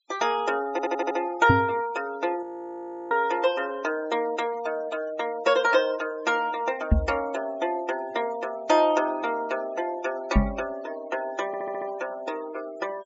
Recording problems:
treble missing; nothing above 8 kHz
noise reduction artefacts; signal-to-artefact ratio 19 dB
audio stuttering; at 0.5 s and at 11 s
knock on the microphone; at 1.5 s, at 7 s and at 10 s; peak +10 dB vs average level
audio freezing; at 2.5 s for 0.5 s

